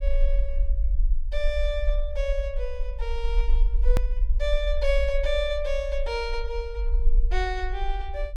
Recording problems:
rumble; below 46 Hz, SNR -2 dB
edit click; at 4 s

